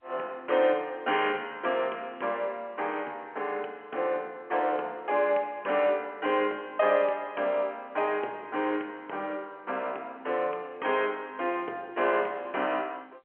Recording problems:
phone line; 320 Hz to 3.2 kHz, G.711

